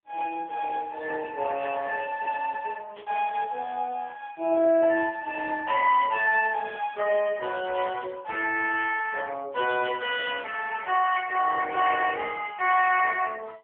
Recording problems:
phone line; 340 Hz to 3.3 kHz, AMR-NB
static burst; 5 times, first at 1.5 s; peak -15 dB vs average level

